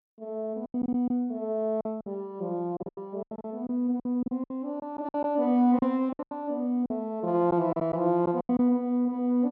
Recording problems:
lost packets; 12% of the sound replaced, filled with silence

